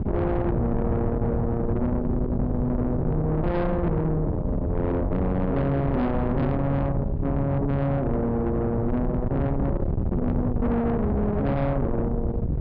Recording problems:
treble missing; nothing above 5.5 kHz
distortion; soft clipping, signal-to-distortion ratio 8 dB
wind noise; below 250 Hz, SNR 2 dB

